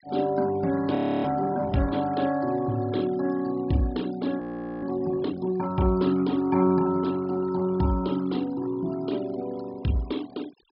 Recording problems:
low-pass filter; nothing above 5.5 kHz
denoising artefacts; signal-to-artefact ratio 21 dB
audio freezing; at 1 s and at 4.5 s

